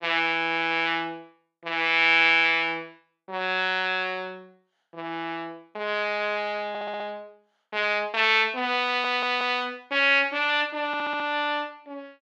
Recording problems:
audio stuttering; at 6.5 s, at 9 s and at 11 s

